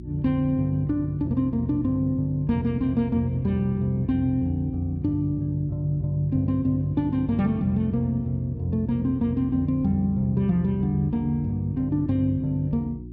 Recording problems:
hum; 60 Hz, harmonics up to 360 Hz, SNR 14 dB

